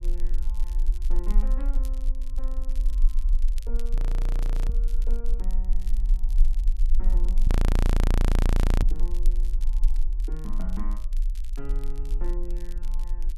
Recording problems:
low-frequency rumble; below 36 Hz, strongest tone 28 Hz, SNR -16 dB
crackle; vinyl, SNR 10 dB
audio freezing; at 4 s for 1 s and at 7.5 s for 1.5 s

